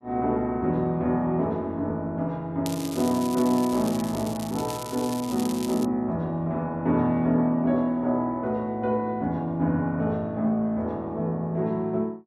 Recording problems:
crackle; from 2.5 to 6 s; loose cable, SNR 13 dB

